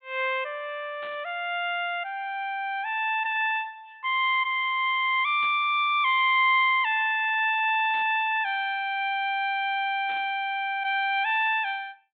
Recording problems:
low-pass filter; nothing above 4 kHz
burst of static; 4 times, first at 1 s; peak -15 dB vs average level

